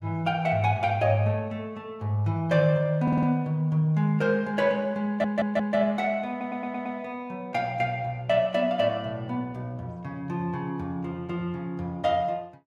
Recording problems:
audio stuttering; at 3 s, at 5 s and at 6.5 s

